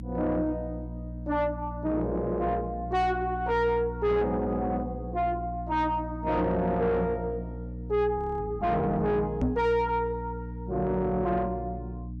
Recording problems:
distorted audio; soft clipping, signal-to-distortion ratio 6 dB
hum; 60 Hz, harmonics up to 300 Hz, SNR 9 dB
audio freezing; at 8 s
microphone bump; at 9.5 s; peak +4 dB vs average level

